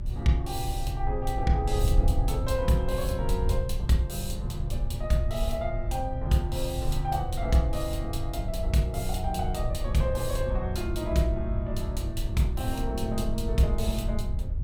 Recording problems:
hum; 60 Hz, harmonics up to 840 Hz, SNR 12 dB
wind on the microphone; below 78 Hz, SNR 2 dB

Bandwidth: 17 kHz